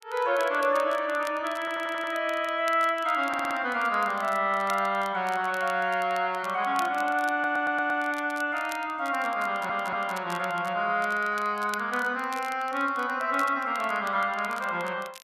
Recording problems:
crackle; vinyl, SNR 20 dB
stutter; 4 times, first at 1.5 s

